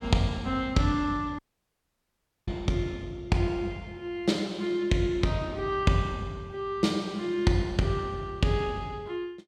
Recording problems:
audio cutting out; at 1.5 s for 1 s

